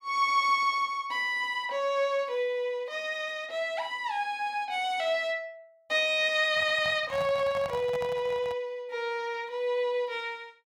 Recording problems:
microphone handling noise; from 6.5 to 8.5 s; peak -7 dB vs average level

